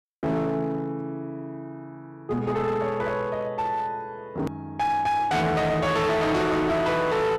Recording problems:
distortion; hard clipping, uneven, signal-to-distortion ratio 7 dB
click at an edit; at 4.5 s

